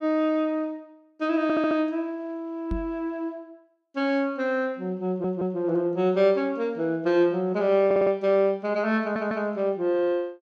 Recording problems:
audio stuttering; 4 times, first at 1.5 s
microphone thump; at 2.5 s; peak -3 dB vs average level

